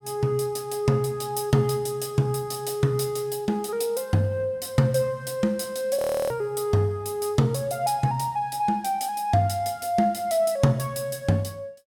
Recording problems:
audio freezing; at 6 s

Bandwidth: 17 kHz